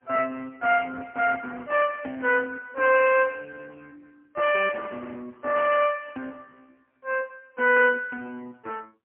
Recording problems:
telephone audio; 320 Hz to 2.9 kHz, AMR-NB, then MP3

